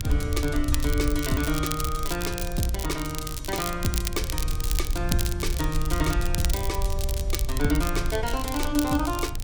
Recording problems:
hum; 60 Hz, harmonics up to 1.4 kHz, SNR 22 dB
low-frequency rumble; below 70 Hz, SNR 3 dB
wind noise; below 450 Hz, SNR 20 dB
crackle; vinyl, SNR 6 dB

